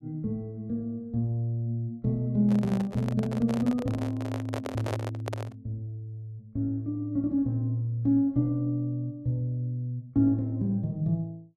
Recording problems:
microphone handling noise; from 2.5 to 5.5 s; peak -1 dB vs average level

